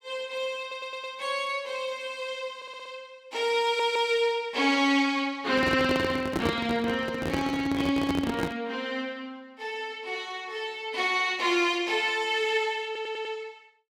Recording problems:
stutter; 4 times, first at 0.5 s
handling noise; from 5.5 to 8.5 s; peak +3 dB vs average level

